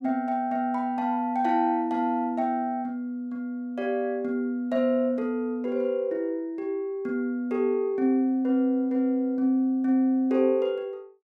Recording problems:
none

